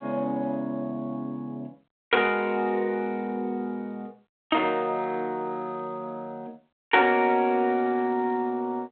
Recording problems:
telephone audio; 320 Hz to 3.6 kHz, G.726

